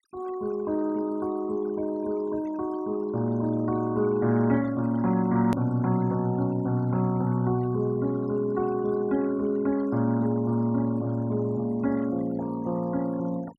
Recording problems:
denoising artefacts; signal-to-artefact ratio 20 dB
click at an edit; at 5.5 s

